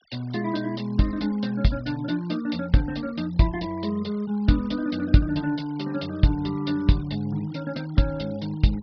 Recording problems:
treble missing; nothing above 5.5 kHz
denoising artefacts; signal-to-artefact ratio 23 dB

